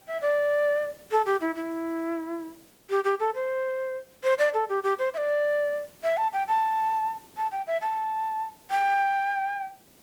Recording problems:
background hiss; SNR 27 dB

